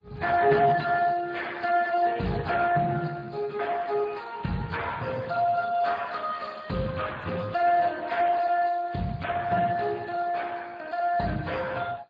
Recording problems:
lossy codec; MP3, then Speex, log-spectral distance 4 dB

